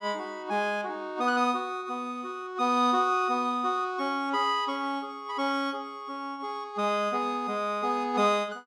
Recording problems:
none

